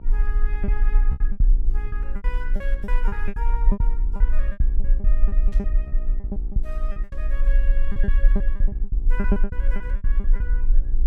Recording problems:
electrical hum; 60 Hz, harmonics up to 1.2 kHz, SNR 7 dB
low-frequency rumble; below 38 Hz, strongest tone 28 Hz, SNR -15 dB
lost packets; 17% of the sound replaced, filled with repeated pitch periods
burst of static; at 5.5 s and at 7 s; peak -7 dB vs average level

